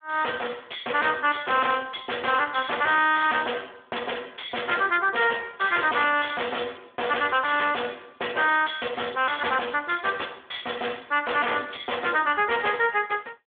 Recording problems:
phone line; 320 Hz to 3.5 kHz, Speex
distorted audio; hard clipping, signal-to-distortion ratio 6 dB

